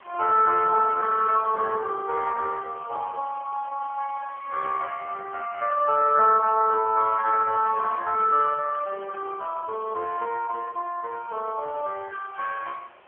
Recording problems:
phone line; 340 Hz to 2.8 kHz, AMR-NB
background hiss; SNR 26 dB

